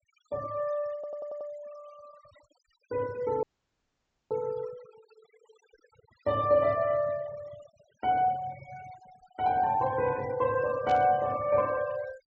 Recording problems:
low-pass filter; nothing above 8 kHz
denoising artefacts; signal-to-artefact ratio 21 dB
stutter; at 1 s
dropout; at 3.5 s for 1 s
static burst; at 11 s; peak -10 dB vs average level

